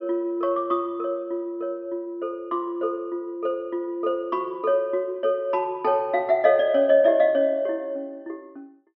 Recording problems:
low-pass filter; nothing above 5.5 kHz

